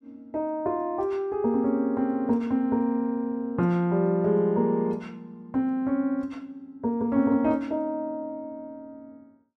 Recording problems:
none

